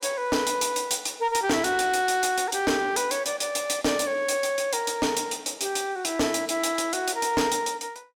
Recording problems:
distorted audio; soft clipping, signal-to-distortion ratio 10 dB

